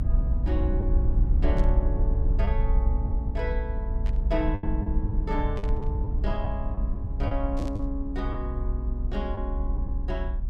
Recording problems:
electrical hum; 50 Hz, harmonics up to 400 Hz, SNR 18 dB
rumble; below 60 Hz, SNR -6 dB
packet loss; 4% of the sound replaced, filled with the last packet
burst of static; 4 times, first at 1.5 s; peak -8 dB vs average level

